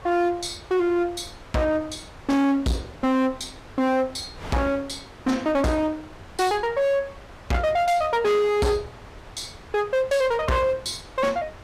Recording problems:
distorted audio; hard clipping, uneven, signal-to-distortion ratio 7 dB
wind noise; below 1.4 kHz, SNR 20 dB

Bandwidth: 15 kHz